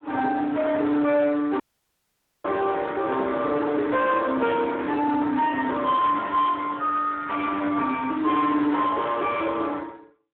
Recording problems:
telephone audio; 220 Hz to 3.7 kHz, Speex
distorted audio; soft clipping, signal-to-distortion ratio 10 dB
dropout; at 1.5 s for 1 s

